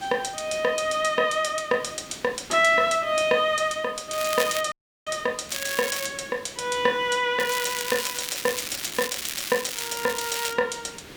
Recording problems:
background hiss; SNR 19 dB
crackle; at 4 s, at 5.5 s and from 7.5 to 11 s; loose cable, SNR 6 dB
dropout; at 4.5 s

